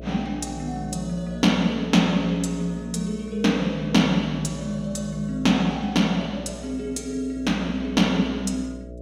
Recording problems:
hum; 60 Hz, harmonics up to 660 Hz, SNR 15 dB

